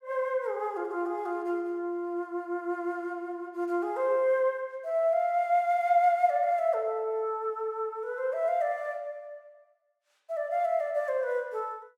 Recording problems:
none

